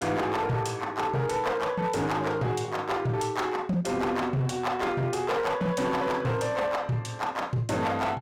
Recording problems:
distortion; hard clipping, signal-to-distortion ratio 11 dB

